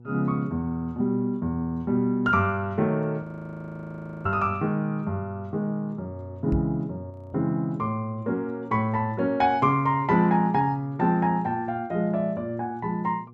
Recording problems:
electrical hum; 60 Hz, harmonics up to 840 Hz, SNR 22 dB
frozen audio; at 3 s for 1 s and at 7 s
knock on the microphone; at 6.5 s; peak +1 dB vs average level

